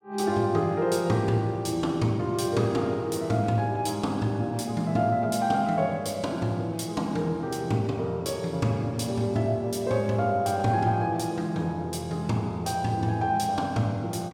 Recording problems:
none

